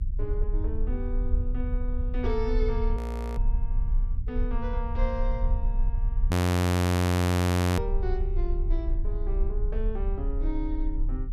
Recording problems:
rumble; below 90 Hz, strongest tone 32 Hz, SNR -7 dB
frozen audio; at 3 s and at 6.5 s for 1.5 s

